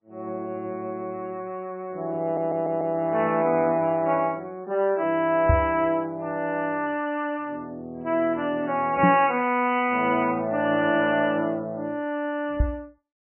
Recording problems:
lossy compression; MP3, log-spectral distance 2 dB, nothing above 2.7 kHz
audio stuttering; at 2 s
knock on the microphone; at 5.5 s, at 9 s and at 13 s; peak +7 dB vs average level

